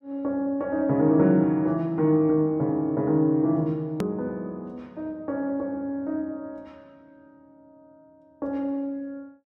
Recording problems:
click at an edit; at 4 s

